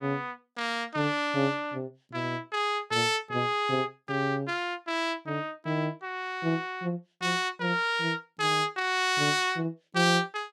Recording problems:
none

